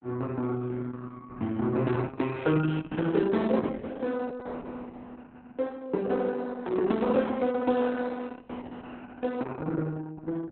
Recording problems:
lossy codec; Opus, log-spectral distance 4 dB, nothing above 3.9 kHz

